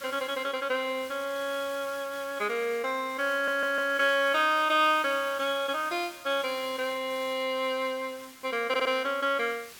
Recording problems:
hiss; slope +1 dB per octave, SNR 19 dB
stutter; at 3.5 s and at 8.5 s

